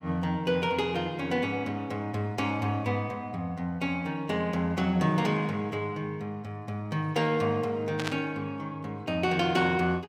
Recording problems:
burst of static; at 8 s; peak +1 dB vs average level

